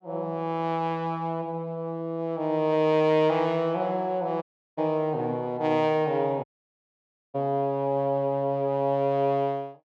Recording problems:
dropout; at 4.5 s and at 6.5 s for 1 s

